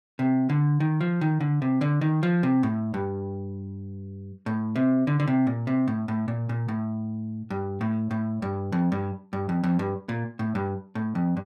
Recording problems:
none

